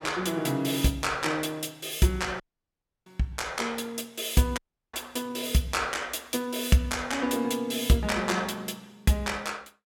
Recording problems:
dropout; at 2.5 s for 0.5 s and at 4.5 s

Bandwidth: 17 kHz